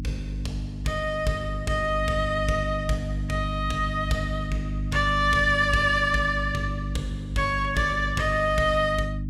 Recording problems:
electrical hum; 50 Hz, harmonics up to 300 Hz, SNR 6 dB

